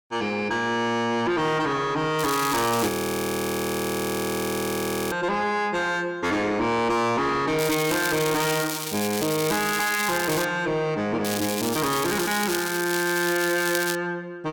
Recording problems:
distorted audio; soft clipping, signal-to-distortion ratio 7 dB
crackling; at 2 s, from 7.5 to 10 s and from 11 to 14 s; loose cable, SNR 6 dB
audio freezing; at 3 s for 2 s

